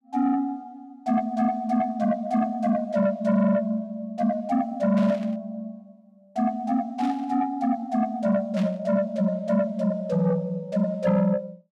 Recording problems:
distorted audio; soft clipping, signal-to-distortion ratio 11 dB
burst of static; at 5 s, at 7 s and at 8.5 s; peak -11 dB vs average level

